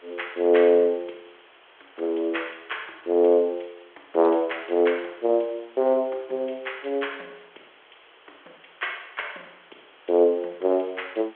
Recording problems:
phone line; 300 Hz to 3.9 kHz, G.726
hiss; SNR 28 dB

